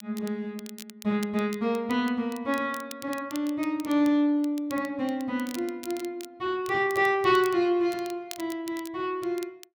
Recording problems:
crackle; vinyl, SNR 19 dB

